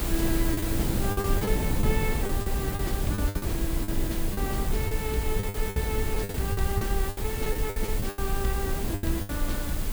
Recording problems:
electrical hum; 60 Hz, harmonics up to 720 Hz, SNR 25 dB
background hiss; slope -3 dB per octave, SNR 2 dB
low-frequency rumble; below 58 Hz, SNR 1 dB
wind noise; below 280 Hz, SNR 0 dB
lost packets; 13% of the sound replaced, filled with the last packet

